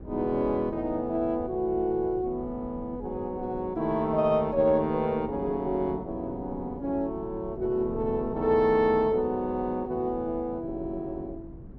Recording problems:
wind on the microphone; below 240 Hz, SNR 16 dB

